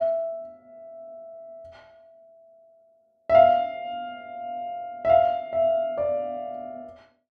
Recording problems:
none

